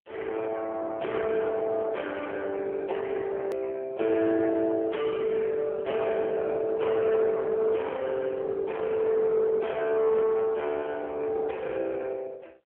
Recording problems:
telephone audio; 300 Hz to 2 kHz, AMR-NB
distorted audio; soft clipping, signal-to-distortion ratio 13 dB
edit click; at 3.5 s

